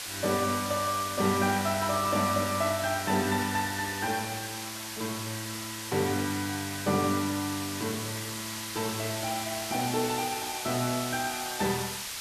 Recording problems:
hiss; slope +2 dB per octave, SNR 5 dB

